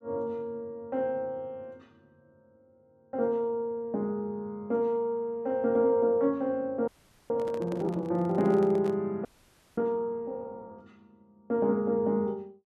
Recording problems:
audio freezing; at 7 s and at 9.5 s for 0.5 s
microphone handling noise; from 7.5 to 9 s; peak -8 dB vs average level

